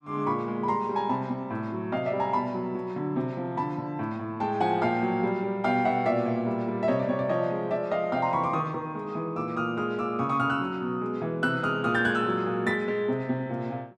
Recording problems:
none

